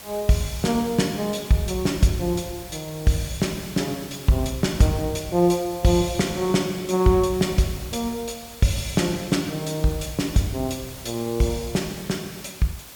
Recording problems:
hiss; slope -1 dB per octave, SNR 16 dB

